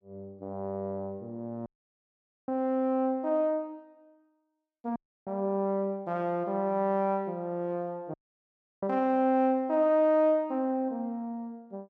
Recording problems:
audio cutting out; at 1.5 s for 1 s, at 5 s and at 8 s for 0.5 s

